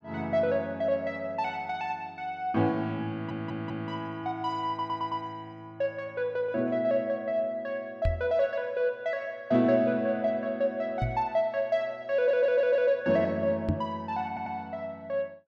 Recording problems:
audio stuttering; 4 times, first at 3 s
microphone thump; at 8 s, at 11 s and at 14 s; peak +5 dB vs average level

